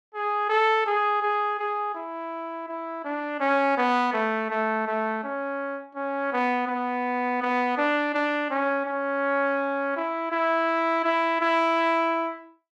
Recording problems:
none

